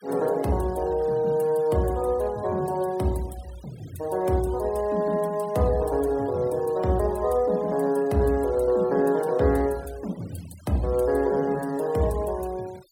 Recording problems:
denoising artefacts; signal-to-artefact ratio 24 dB

